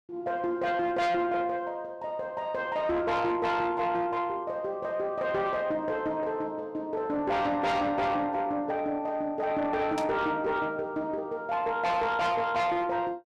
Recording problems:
distortion; soft clipping, signal-to-distortion ratio 10 dB
burst of static; at 10 s; peak -5 dB vs average level

